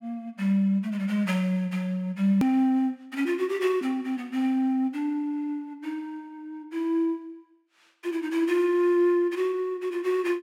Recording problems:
edit click; at 2.5 s

